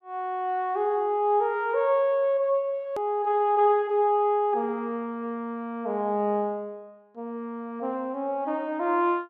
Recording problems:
edit click; at 3 s

